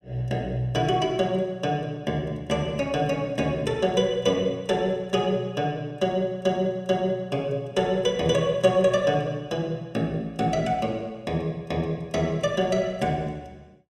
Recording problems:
none

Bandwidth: 14.5 kHz